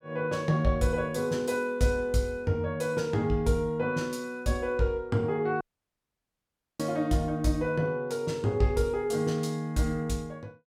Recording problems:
audio cutting out; at 5.5 s for 1 s

